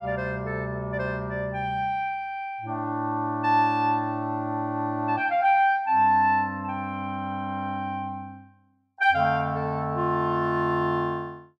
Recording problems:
none

